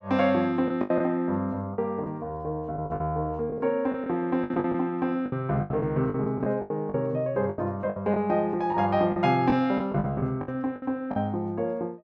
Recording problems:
packet loss; 12% of the sound replaced, filled with the last packet

